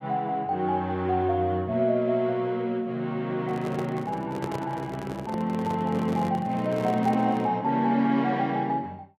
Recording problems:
microphone handling noise; from 3.5 to 7.5 s; peak -3 dB vs average level

